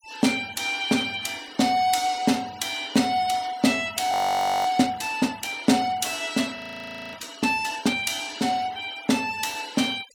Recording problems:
denoising artefacts; signal-to-artefact ratio 20 dB
frozen audio; at 4 s for 0.5 s and at 6.5 s for 0.5 s

